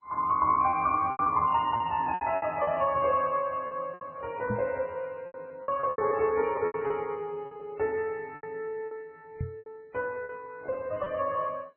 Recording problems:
lossy compression; MP3, then MP2, log-spectral distance 2 dB, nothing above 2.5 kHz
packet loss; 11% of the sound replaced, filled with repeated pitch periods
microphone thump; at 4.5 s and at 9.5 s; peak 0 dB vs average level

